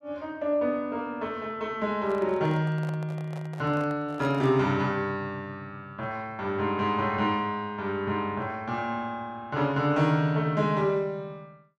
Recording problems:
microphone handling noise; from 2 to 4.5 s; peak -8 dB vs average level

